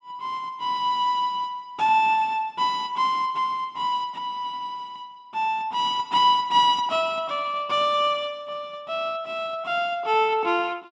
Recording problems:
none

